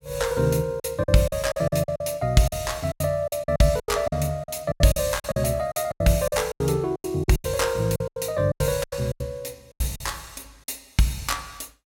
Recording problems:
lost packets; 16% of the sound replaced, filled with silence

